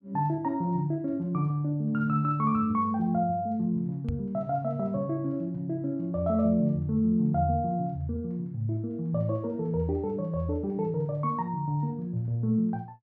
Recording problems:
microphone thump; at 4 s; peak +1 dB vs average level

